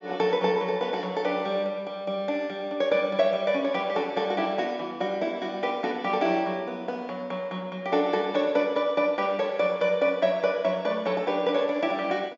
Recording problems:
treble missing; nothing above 7.2 kHz

